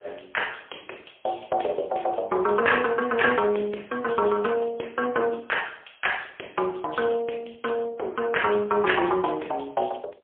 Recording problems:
telephone audio; 300 Hz to 3.8 kHz, AMR-NB, then MP3

